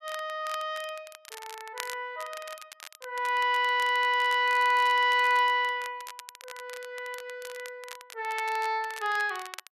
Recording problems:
crackling; vinyl, SNR 19 dB

